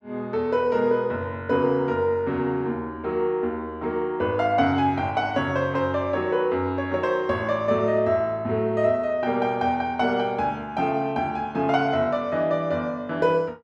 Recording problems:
none

